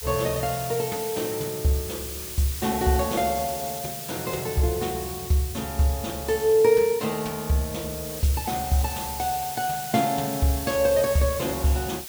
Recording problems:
hiss; slope +3 dB per octave, SNR 8 dB

